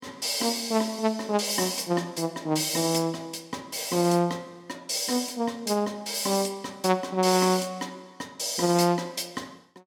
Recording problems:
none

